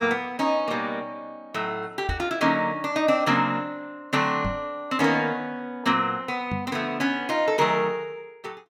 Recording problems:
microphone bump; at 2 s, at 4.5 s and at 6.5 s; peak -1 dB vs average level

